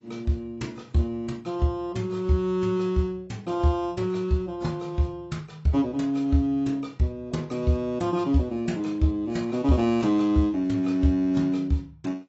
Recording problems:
lossy compression; AAC, log-spectral distance 2 dB, nothing above 7.8 kHz

